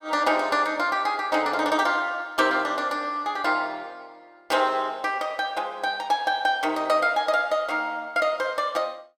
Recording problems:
none

